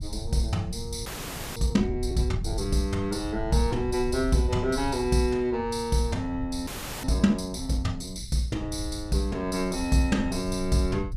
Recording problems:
low-frequency rumble; below 94 Hz, SNR 11 dB
audio freezing; at 1 s for 0.5 s and at 6.5 s

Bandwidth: 14.5 kHz